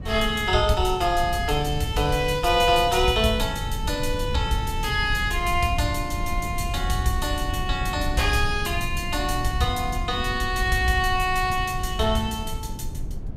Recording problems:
rumble; below 100 Hz, SNR 7 dB

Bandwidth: 15.5 kHz